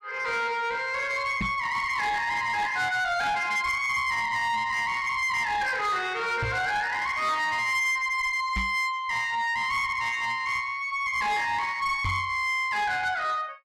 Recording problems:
distortion; soft clipping, signal-to-distortion ratio 12 dB
microphone bump; 4 times, first at 1.5 s; peak 0 dB vs average level

